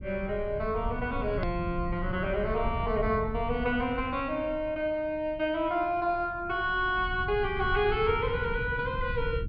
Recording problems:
low-pass filter; nothing above 5.5 kHz
rumble; below 120 Hz, SNR 9 dB
hard cut with a click; at 1.5 s

